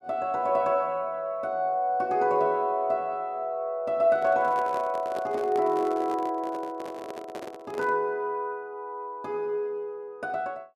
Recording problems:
handling noise; from 4 to 8 s; peak -5 dB vs average level

